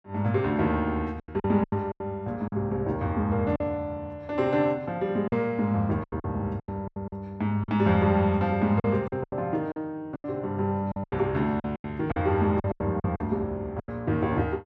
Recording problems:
lost packets; 11% of the sound replaced, filled with silence

